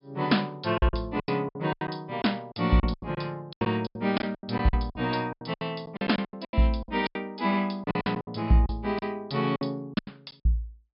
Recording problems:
treble cut off; nothing above 5.5 kHz
packet loss; 18% of the sound replaced, filled with silence

